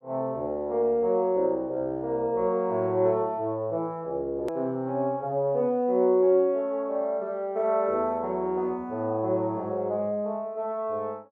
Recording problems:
click at an edit; at 4.5 s

